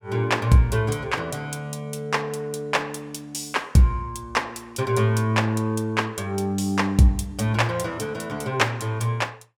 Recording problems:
none

